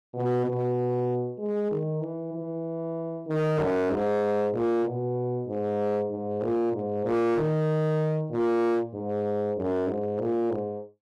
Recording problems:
distortion; hard clipping, signal-to-distortion ratio 11 dB

